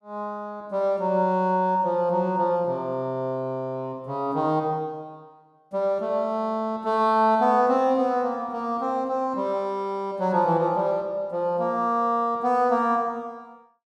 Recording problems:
none

